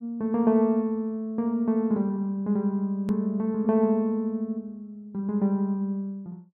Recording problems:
click at an edit; at 3 s

